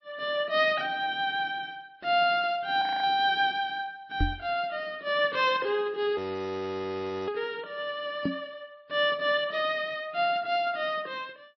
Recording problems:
lossy codec; MP3, then MP3, log-spectral distance 2 dB, nothing above 5.7 kHz
frozen audio; at 3 s and at 6 s for 1 s
knock on the microphone; at 4 s and at 8.5 s; peak +3 dB vs average level

